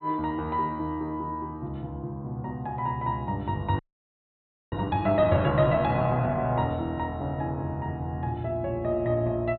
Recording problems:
treble cut off; nothing above 4.3 kHz
frozen audio; at 4 s for 1 s

